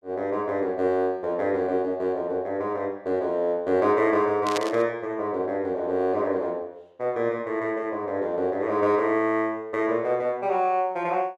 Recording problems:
burst of static; at 4.5 s; peak 0 dB vs average level

